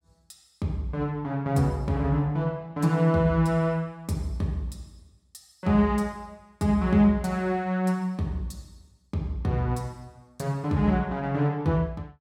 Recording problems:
none

